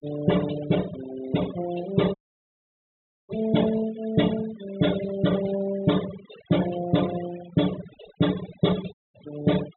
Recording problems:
low-pass filter; nothing above 3.9 kHz
noise reduction artefacts; signal-to-artefact ratio 13 dB
dropout; at 2 s for 1 s and at 9 s

